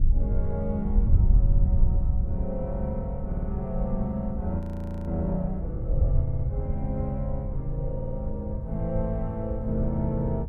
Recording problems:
wind on the microphone; below 78 Hz, SNR -2 dB
stutter; 4 times, first at 1.5 s
audio freezing; at 4.5 s

